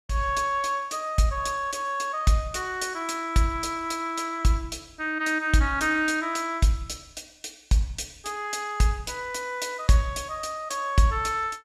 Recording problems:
none

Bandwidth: 13.5 kHz